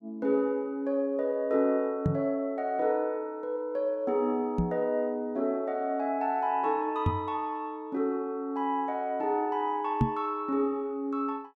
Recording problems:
knock on the microphone; 4 times, first at 2 s; peak +8 dB vs average level

